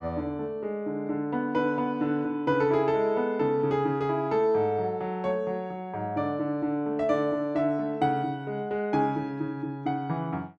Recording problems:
none

